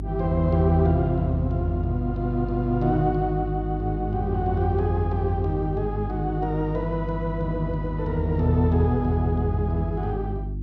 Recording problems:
hum; 50 Hz, harmonics up to 350 Hz, SNR 7 dB

